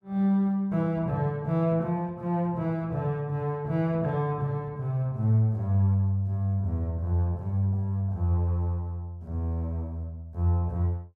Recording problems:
none

